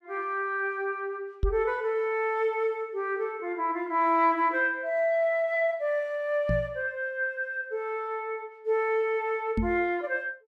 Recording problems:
microphone thump; at 1.5 s, at 6.5 s and at 9.5 s; peak +4 dB vs average level

